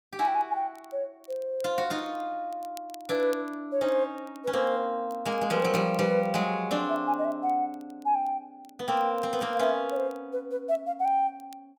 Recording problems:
crackling; vinyl, SNR 28 dB

